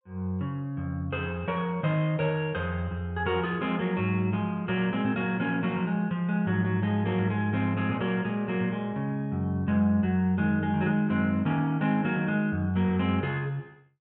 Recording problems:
treble cut off; nothing above 4 kHz

